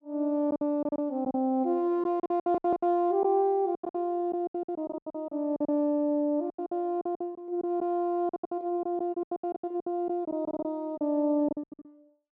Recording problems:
packet loss; 17% of the sound replaced, filled with silence
audio stuttering; at 2.5 s and at 10 s

